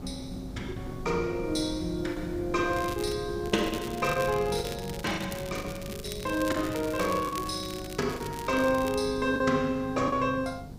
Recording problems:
hum; 50 Hz, harmonics up to 700 Hz, SNR 17 dB
hiss; SNR 27 dB
wind on the microphone; below 240 Hz, SNR 14 dB
lost packets; 6% of the sound replaced, filled with the last packet
crackling; at 2.5 s and from 3.5 to 9 s; loose cable, SNR 14 dB

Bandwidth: 15.5 kHz